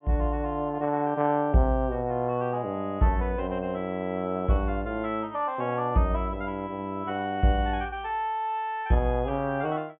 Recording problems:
treble missing; nothing above 3.5 kHz

